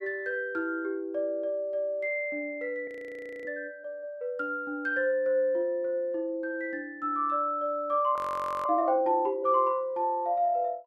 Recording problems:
frozen audio; at 3 s for 0.5 s and at 8 s

